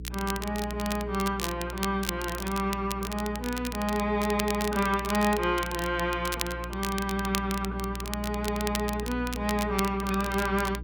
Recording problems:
hum; 60 Hz, harmonics up to 420 Hz, SNR 10 dB
crackle; vinyl, SNR 8 dB

